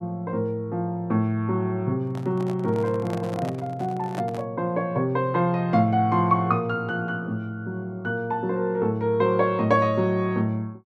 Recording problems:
handling noise; from 2 to 4.5 s; peak -5 dB vs average level

